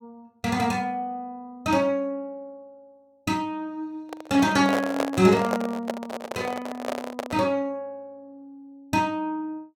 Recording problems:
microphone handling noise; from 4 to 7.5 s; peak +3 dB vs average level

